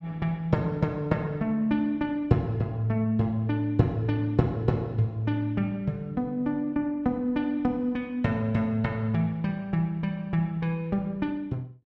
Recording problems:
none

